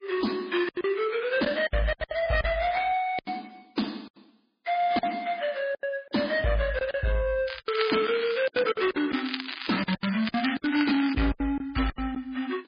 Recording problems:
lossy codec; MP3, log-spectral distance 7 dB, nothing above 4.4 kHz
distorted audio; soft clipping, signal-to-distortion ratio 11 dB
packet loss; 12% of the sound replaced, filled with silence
crackle; from 7.5 to 8.5 s and from 9 to 11 s; loose cable, SNR 8 dB

